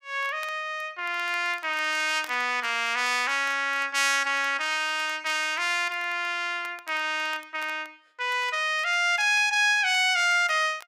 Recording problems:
crackle; vinyl, SNR 26 dB

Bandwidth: 15.5 kHz